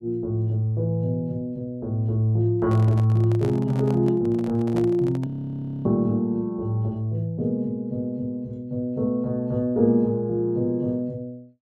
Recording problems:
microphone handling noise; from 2.5 to 5.5 s; peak -7 dB vs average level
frozen audio; at 5.5 s for 0.5 s

